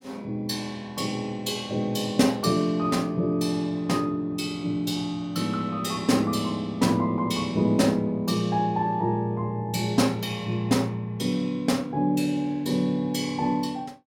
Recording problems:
none

